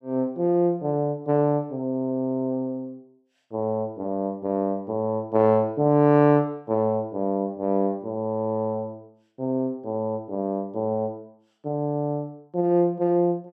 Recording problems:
none

